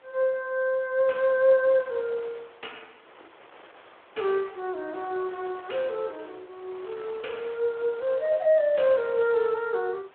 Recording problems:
phone line; 320 Hz to 3.9 kHz, Speex
wind on the microphone; below 2.1 kHz, SNR 23 dB

